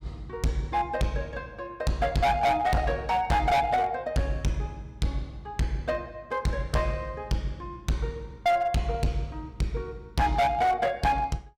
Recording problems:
distortion; hard clipping, uneven, signal-to-distortion ratio 7 dB

